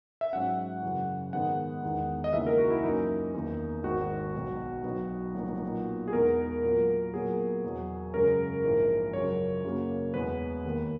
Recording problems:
audio stuttering; at 5.5 s

